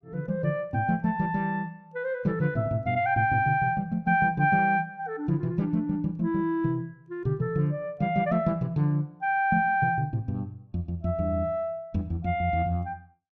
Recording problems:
none

